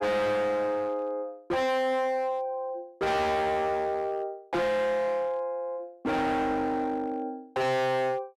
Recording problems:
distortion; hard clipping, signal-to-distortion ratio 6 dB

